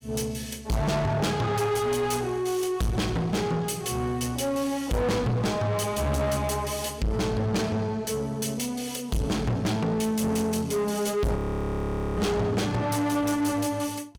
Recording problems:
distorted audio; soft clipping, signal-to-distortion ratio 6 dB
frozen audio; at 11 s for 1 s

